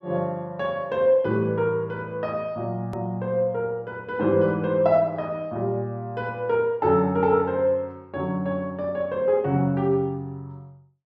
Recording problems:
hard cut with a click; at 3 s

